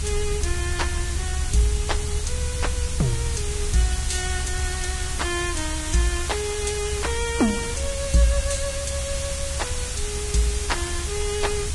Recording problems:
lossy codec; Vorbis, log-spectral distance 11 dB, nothing above 10.4 kHz
background hiss; slope +1 dB per octave, SNR 3 dB
rumble; below 72 Hz, SNR 3 dB

